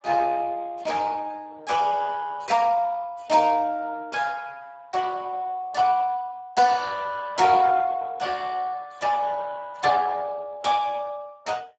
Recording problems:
lossy compression; Speex, log-spectral distance 4 dB, nothing above 7.6 kHz

